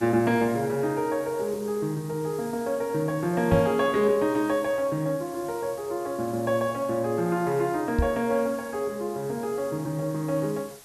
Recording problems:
hiss; SNR 20 dB
microphone thump; at 3.5 s and at 8 s; peak +6 dB vs average level

